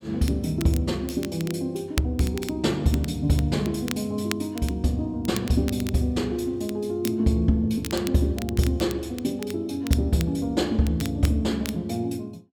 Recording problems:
crackling; vinyl, SNR 15 dB

